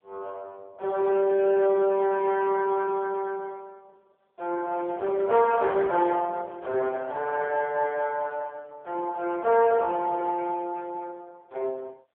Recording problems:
phone line; 340 Hz to 2.1 kHz, AMR-NB
distorted audio; soft clipping, signal-to-distortion ratio 13 dB

